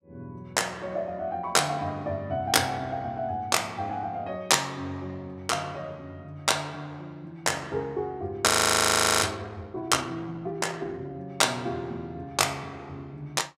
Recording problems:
audio freezing; at 8.5 s for 1 s

